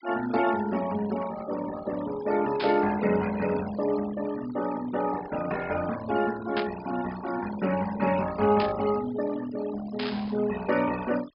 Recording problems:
treble cut off; nothing above 5.5 kHz
noise reduction artefacts; signal-to-artefact ratio 13 dB
static burst; 4 times, first at 2.5 s; peak 0 dB vs average level

